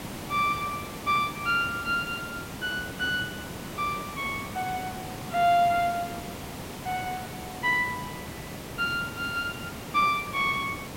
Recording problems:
background hiss; slope -5 dB per octave, SNR 10 dB

